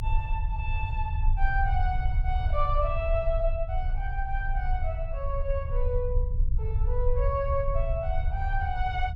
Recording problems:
rumble; below 66 Hz, strongest tone 28 Hz, SNR -2 dB

